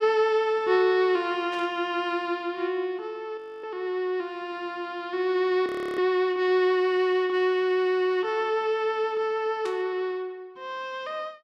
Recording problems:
static burst; at 1.5 s and at 9.5 s; peak -12 dB vs average level
frozen audio; at 3.5 s and at 5.5 s

